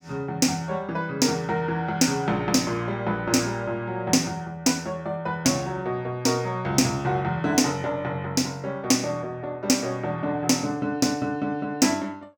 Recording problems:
none

